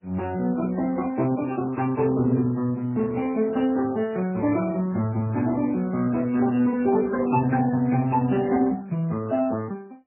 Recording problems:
codec artefacts; Speex, then MP3, log-spectral distance 3 dB, nothing above 2.7 kHz

